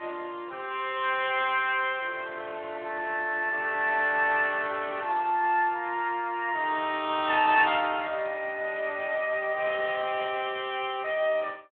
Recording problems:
phone line; 300 Hz to 3.5 kHz, Speex

